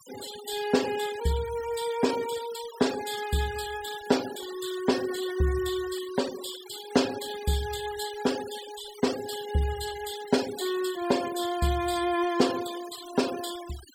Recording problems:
noise reduction artefacts; signal-to-artefact ratio 12 dB

